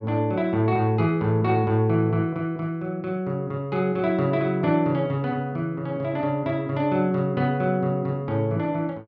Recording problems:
none

